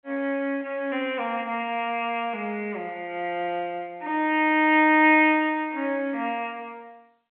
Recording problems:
phone line; 280 Hz to 3.3 kHz, G.711

